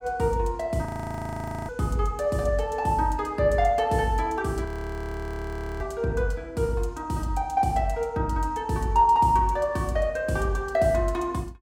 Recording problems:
frozen audio; at 1 s for 1 s and at 4.5 s for 1 s

